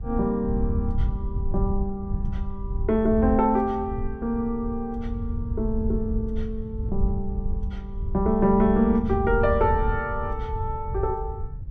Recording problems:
wind noise; below 82 Hz, SNR 5 dB

